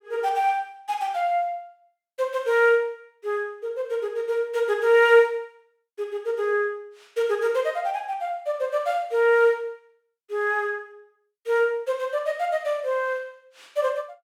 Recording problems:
none

